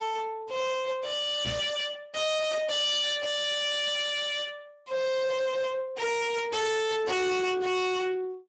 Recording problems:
lossy compression; Speex, log-spectral distance 5 dB, nothing above 7.6 kHz
distorted audio; soft clipping, signal-to-distortion ratio 7 dB
knock on the microphone; at 1.5 s; peak -2 dB vs average level

